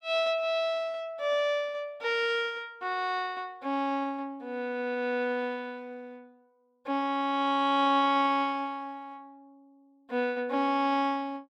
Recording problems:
none

